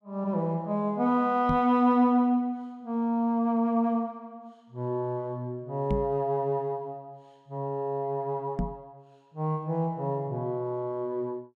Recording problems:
knock on the microphone; at 1.5 s, at 6 s and at 8.5 s; peak +2 dB vs average level

